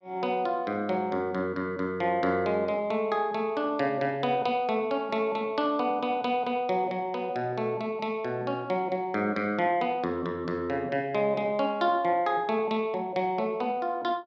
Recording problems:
none

